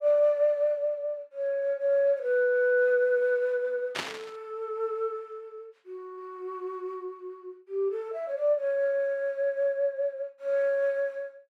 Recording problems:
burst of static; at 4 s; peak +1 dB vs average level

